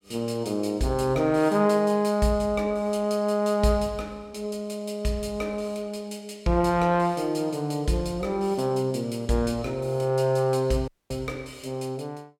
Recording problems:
audio cutting out; at 11 s

